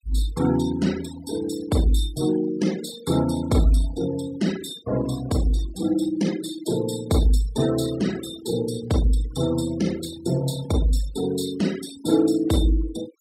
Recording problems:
denoising artefacts; signal-to-artefact ratio 15 dB

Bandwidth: 15.5 kHz